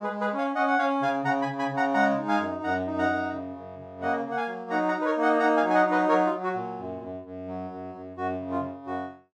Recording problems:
none

